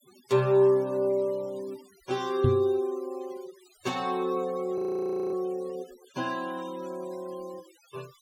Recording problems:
denoising artefacts; signal-to-artefact ratio 24 dB
microphone thump; at 2.5 s; peak +6 dB vs average level
frozen audio; at 5 s for 0.5 s

